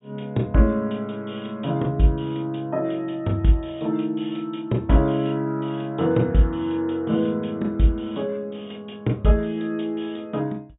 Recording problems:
treble missing; nothing above 4 kHz

